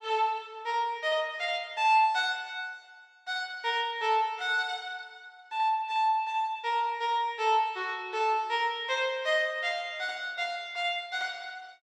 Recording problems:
none

